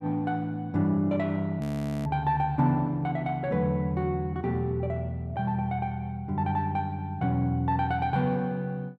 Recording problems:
frozen audio; at 1.5 s

